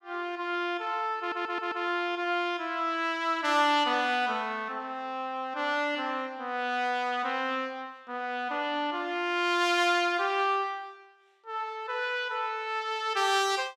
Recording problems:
audio stuttering; at 1 s

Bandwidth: 16.5 kHz